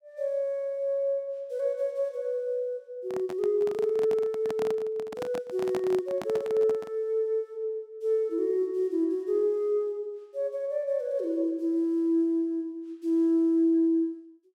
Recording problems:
handling noise; from 3 to 7 s; peak -4 dB vs average level

